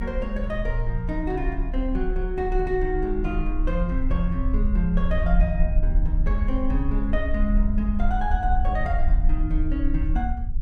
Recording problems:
low-frequency rumble; below 50 Hz, strongest tone 34 Hz, SNR -1 dB

